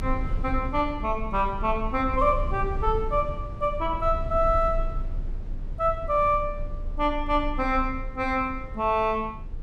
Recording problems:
rumble; below 60 Hz, strongest tone 28 Hz, SNR 9 dB

